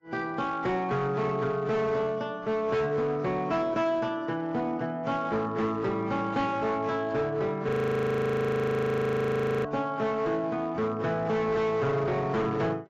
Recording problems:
codec artefacts; AAC, log-spectral distance 2 dB, nothing above 15.1 kHz
distortion; hard clipping, signal-to-distortion ratio 11 dB
audio freezing; at 7.5 s for 2 s

